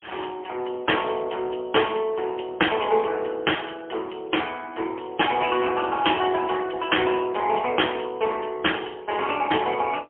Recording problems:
phone line; 260 Hz to 3.3 kHz, AMR-NB, then MP3

